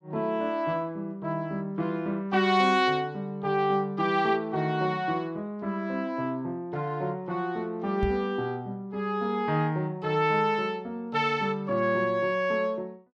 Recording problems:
microphone thump; at 8 s; peak +1 dB vs average level

